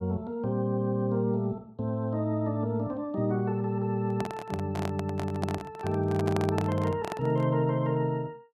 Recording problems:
handling noise; from 4 to 7.5 s; peak +1 dB vs average level

